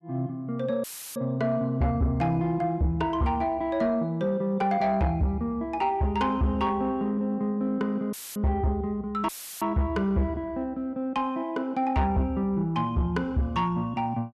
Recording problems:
distorted audio; soft clipping, signal-to-distortion ratio 11 dB
dropout; at 1 s, at 8 s and at 9.5 s; filled with static

